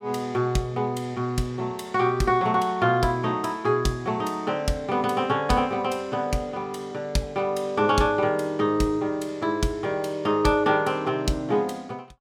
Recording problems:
none

